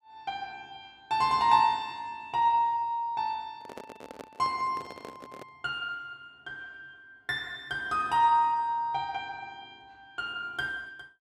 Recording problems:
microphone handling noise; from 3.5 to 5.5 s; peak -9 dB vs average level

